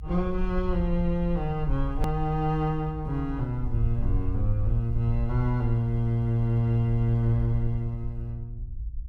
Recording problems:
low-frequency rumble; below 58 Hz, SNR 7 dB
hard cut with a click; at 2 s

